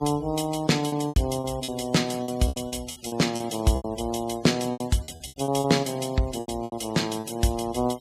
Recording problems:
noise reduction artefacts; signal-to-artefact ratio 20 dB
lost packets; 14% of the sound replaced, filled with repeated pitch periods

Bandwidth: 15 kHz